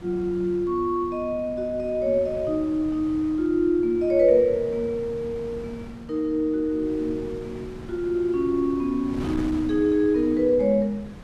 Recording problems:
wind on the microphone; below 390 Hz, SNR 16 dB

